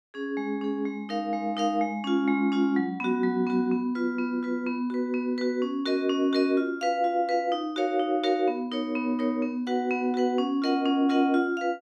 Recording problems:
none

